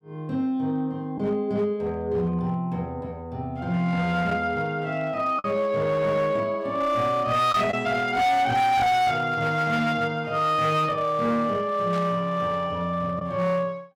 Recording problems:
distortion; hard clipping, uneven, signal-to-distortion ratio 11 dB
lost packets; 0.9% of the sound replaced, filled with the last packet
static burst; at 12 s; peak -12 dB vs average level

